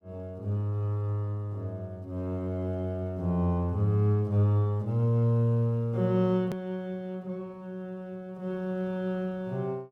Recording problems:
hard cut with a click; at 6.5 s

